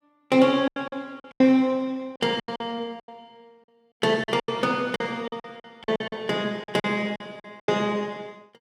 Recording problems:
packet loss; 16% of the sound replaced, filled with silence

